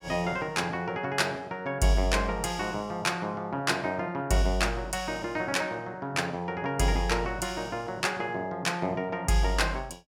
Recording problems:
none

